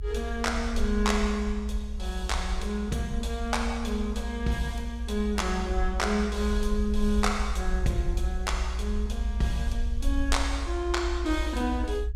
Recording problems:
rumble; below 60 Hz, SNR 2 dB

